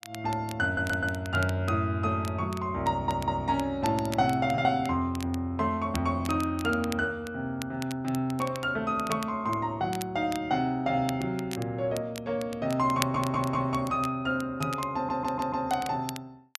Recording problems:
crackle; vinyl, SNR 15 dB
stutter; 4 times, first at 0.5 s

